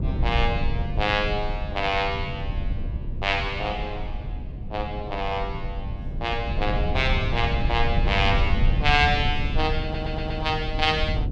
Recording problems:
low-frequency rumble; below 110 Hz, SNR 3 dB
stutter; at 10 s

